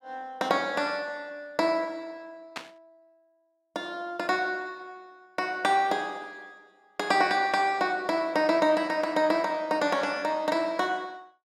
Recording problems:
burst of static; at 2.5 s; peak -4 dB vs average level

